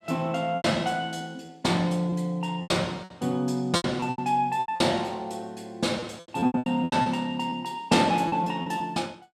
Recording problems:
lost packets; 12% of the sound replaced, filled with repeated pitch periods

